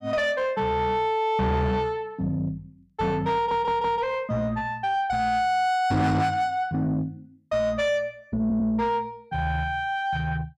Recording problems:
distorted audio; soft clipping, signal-to-distortion ratio 11 dB
stutter; at 3.5 s and at 8.5 s

